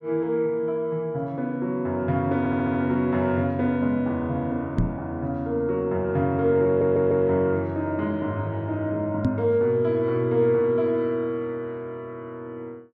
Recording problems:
audio stuttering; at 2.5 s and at 6.5 s
microphone bump; at 5 s and at 9.5 s; peak +5 dB vs average level

